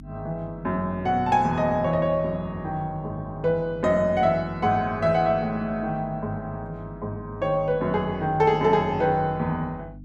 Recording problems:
mains hum; 50 Hz, harmonics up to 300 Hz, SNR 18 dB

